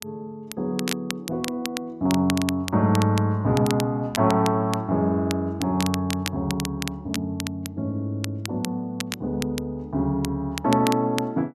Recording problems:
crackle; vinyl, SNR 10 dB

